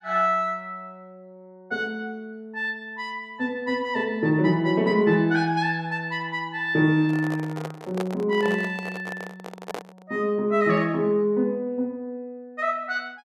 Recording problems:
microphone handling noise; from 7 to 10 s; peak -3 dB vs average level

